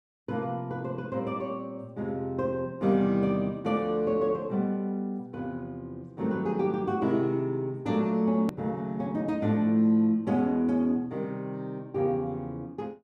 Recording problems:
click at an edit; at 8.5 s

